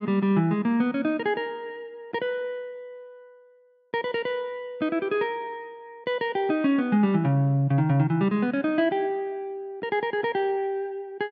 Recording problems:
none

